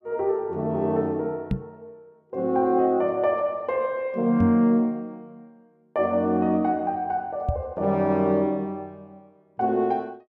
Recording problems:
knock on the microphone; at 1.5 s, at 4.5 s and at 7.5 s; peak +2 dB vs average level

